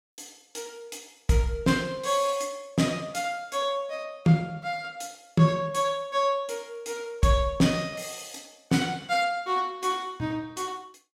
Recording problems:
none

